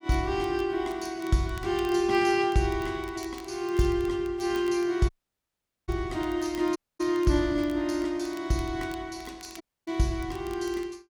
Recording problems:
crackling; vinyl, SNR 25 dB
audio cutting out; at 5 s for 1 s, at 7 s and at 9.5 s

